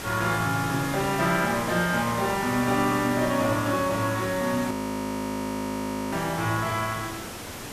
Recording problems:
hiss; slope -3 dB per octave, SNR 9 dB
frozen audio; at 4.5 s for 1.5 s

